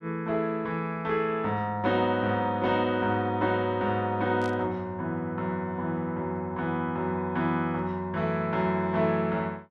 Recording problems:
static burst; at 4.5 s; peak -12 dB vs average level

